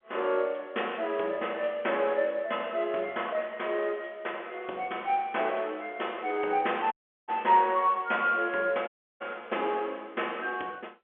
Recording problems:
phone line; 280 Hz to 3.4 kHz, G.711
audio cutting out; at 7 s and at 9 s

